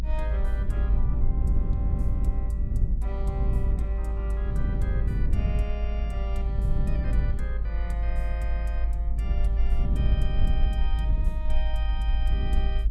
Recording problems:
rumble; below 54 Hz, strongest tone 52 Hz, SNR -11 dB
wind on the microphone; below 120 Hz, SNR -8 dB

